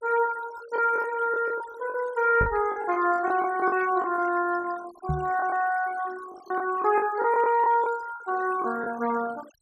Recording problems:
noise reduction artefacts; signal-to-artefact ratio 18 dB
lost packets; 9% of the sound replaced, filled with the last packet
knock on the microphone; at 2.5 s and at 5 s; peak +1 dB vs average level

